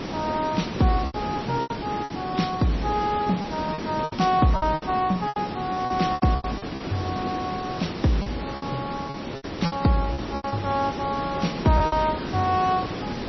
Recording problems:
codec artefacts; MP3, log-spectral distance 9 dB, nothing above 5.8 kHz
hiss; slope -6 dB per octave, SNR 6 dB
lost packets; 11% of the sound replaced, filled with repeated pitch periods

